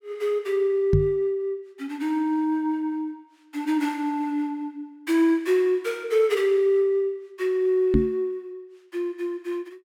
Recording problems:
microphone thump; at 1 s and at 8 s; peak +7 dB vs average level

